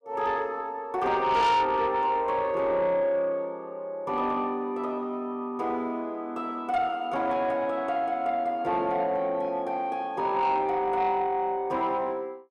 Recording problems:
distorted audio; soft clipping, signal-to-distortion ratio 11 dB

